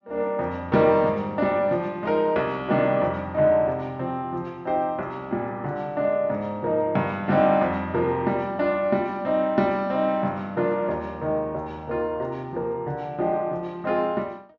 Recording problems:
low-pass filter; nothing above 7.1 kHz

